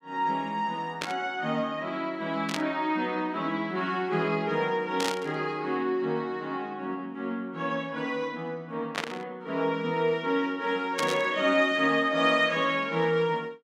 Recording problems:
static burst; 5 times, first at 1 s; peak +2 dB vs average level

